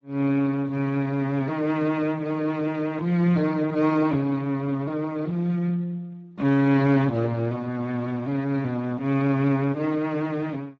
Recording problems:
lossy codec; Speex, log-spectral distance 2 dB

